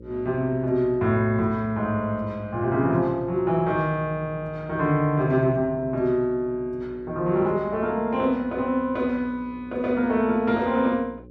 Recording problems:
mains hum; 60 Hz, harmonics up to 540 Hz, SNR 21 dB

